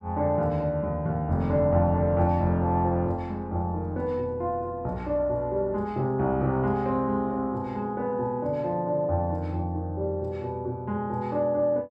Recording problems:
none

